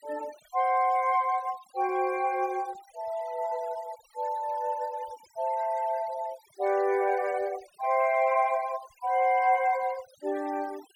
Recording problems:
denoising artefacts; signal-to-artefact ratio 22 dB

